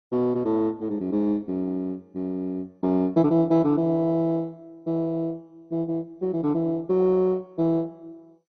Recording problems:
codec artefacts; MP2, log-spectral distance 2 dB, nothing above 6 kHz

